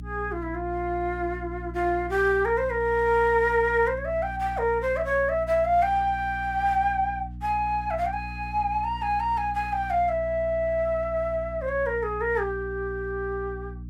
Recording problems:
electrical hum; 60 Hz, harmonics up to 300 Hz, SNR 13 dB

